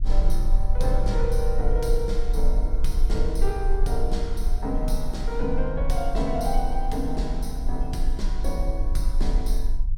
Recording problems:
low-frequency rumble; below 38 Hz, strongest tone 22 Hz, SNR -2 dB

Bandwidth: 16.5 kHz